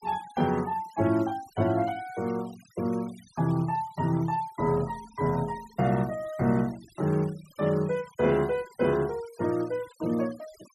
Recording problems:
denoising artefacts; signal-to-artefact ratio 21 dB

